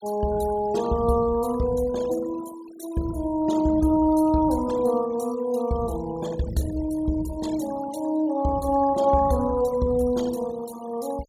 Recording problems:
denoising artefacts; signal-to-artefact ratio 18 dB

